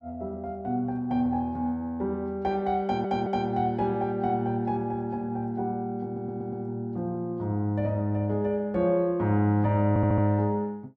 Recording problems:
audio stuttering; at 3 s, at 6 s and at 10 s

